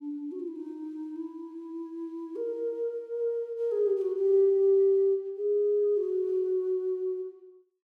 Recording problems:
none

